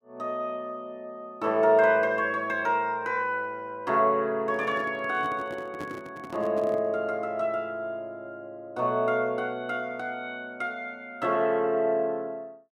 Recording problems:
microphone handling noise; from 4.5 to 7 s; peak -7 dB vs average level

